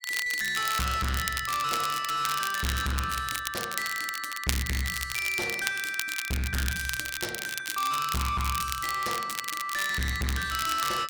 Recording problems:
distortion; hard clipping, uneven, signal-to-distortion ratio 5 dB
crackling; vinyl, SNR 5 dB

